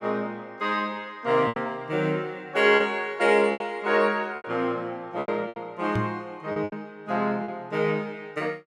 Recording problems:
packet loss; 7% of the sound replaced, filled with repeated pitch periods
microphone thump; at 6 s; peak +2 dB vs average level

